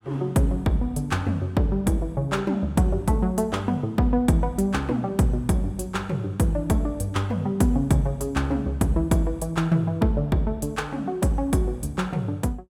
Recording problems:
none

